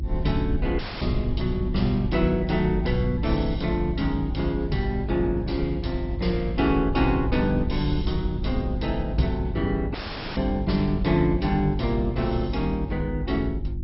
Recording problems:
lossy compression; MP2, log-spectral distance 3 dB, nothing above 5.5 kHz
hum; 50 Hz, harmonics up to 350 Hz, SNR 7 dB
rumble; below 68 Hz, SNR 7 dB
dropout; at 1 s and at 10 s

